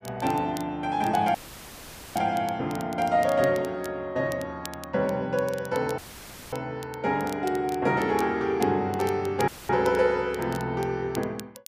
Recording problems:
crackling; vinyl, SNR 19 dB
dropout; at 1.5 s for 1 s, at 6 s for 0.5 s and at 9.5 s; filled with static

